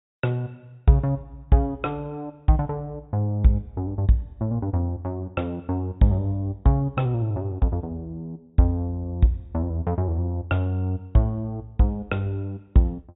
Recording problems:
treble missing; nothing above 4 kHz

